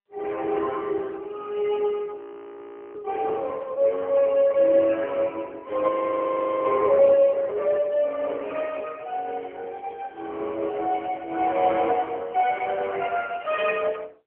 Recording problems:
telephone audio; 300 Hz to 2.9 kHz, AMR-NB
audio freezing; at 2 s for 1 s and at 6 s for 1 s

